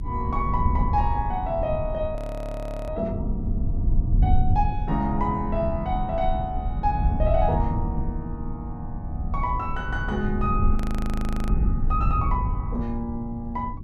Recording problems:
electrical hum; 60 Hz, harmonics up to 360 Hz, SNR 18 dB
rumble; below 96 Hz, SNR 0 dB
frozen audio; at 2 s for 0.5 s and at 11 s for 0.5 s

